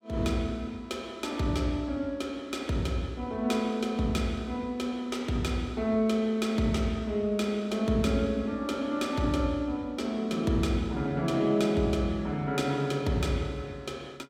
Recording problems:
none

